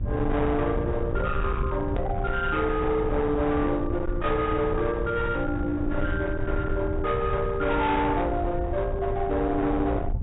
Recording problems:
treble cut off; nothing above 3.8 kHz
distortion; hard clipping, uneven, signal-to-distortion ratio 8 dB
hum; 60 Hz, harmonics up to 600 Hz, SNR 15 dB
rumble; below 130 Hz, SNR 6 dB
edit click; at 2 s

